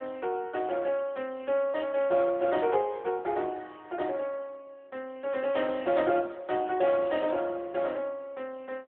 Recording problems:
telephone audio; 300 Hz to 3.4 kHz, AMR-NB

